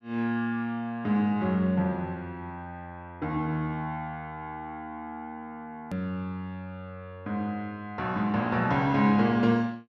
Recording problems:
hard cut with a click; at 6 s

